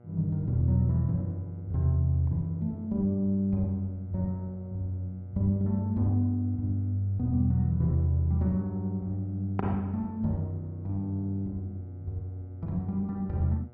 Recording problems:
hum; 60 Hz, harmonics up to 1.3 kHz, SNR 24 dB

